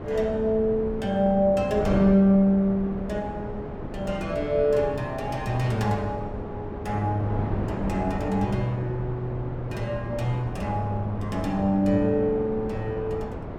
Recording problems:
wind noise; below 490 Hz, SNR 9 dB

